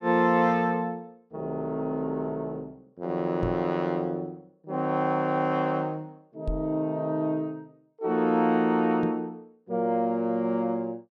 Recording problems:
knock on the microphone; at 3.5 s, at 6.5 s and at 9 s; peak -1 dB vs average level

